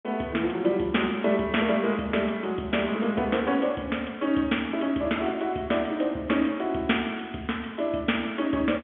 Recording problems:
telephone audio; 150 Hz to 3.4 kHz, G.711

